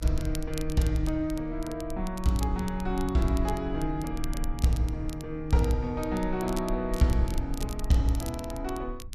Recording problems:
low-frequency rumble; below 50 Hz, SNR 9 dB
crackling; vinyl, SNR 16 dB

